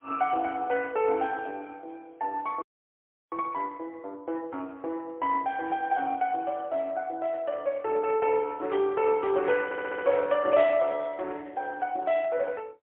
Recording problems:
telephone audio; 300 Hz to 3.3 kHz, AMR-NB, then MP3
frozen audio; at 2.5 s for 0.5 s
stutter; at 9.5 s

